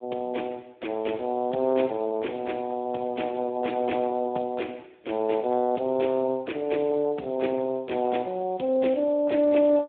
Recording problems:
telephone audio; 170 Hz to 3.6 kHz, Speex

